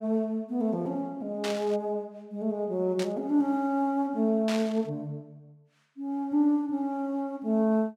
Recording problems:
burst of static; at 1.5 s, at 3 s and at 4.5 s; peak -2 dB vs average level

